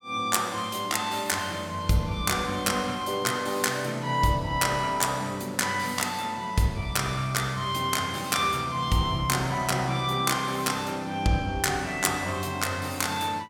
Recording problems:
none

